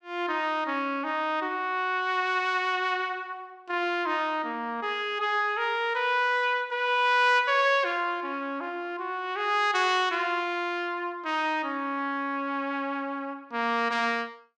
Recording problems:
none

